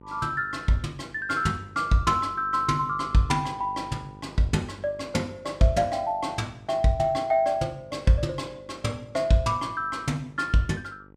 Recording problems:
hum; 50 Hz, harmonics up to 1.5 kHz, SNR 23 dB

